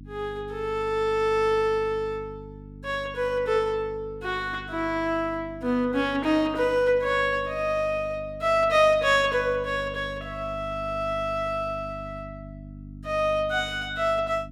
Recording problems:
mains hum; 50 Hz, harmonics up to 300 Hz, SNR 17 dB

